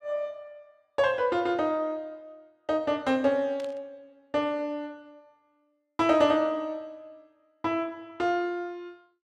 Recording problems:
burst of static; at 3.5 s; peak -14 dB vs average level

